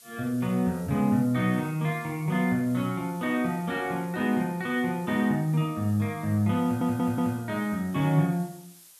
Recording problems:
background hiss; slope +2 dB per octave, SNR 23 dB
audio stuttering; at 6.5 s

